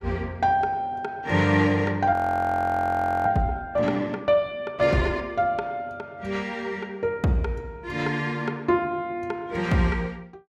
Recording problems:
audio freezing; at 2 s for 1 s

